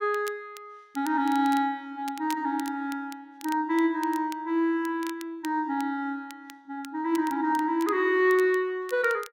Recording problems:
crackle; vinyl, SNR 20 dB

